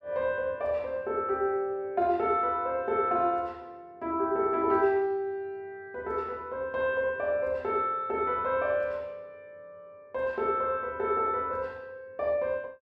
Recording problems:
none

